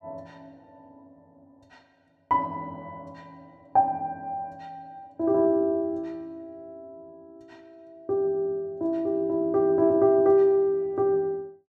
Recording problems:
none

